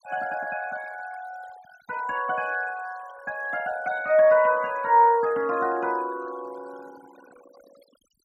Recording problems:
noise reduction artefacts; signal-to-artefact ratio 23 dB

